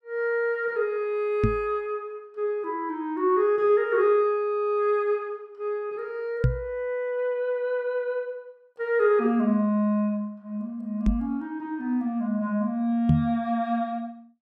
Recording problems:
microphone thump; 4 times, first at 1.5 s; peak +8 dB vs average level

